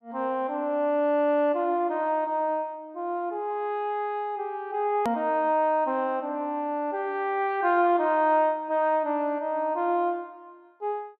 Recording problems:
hard cut with a click; at 5 s

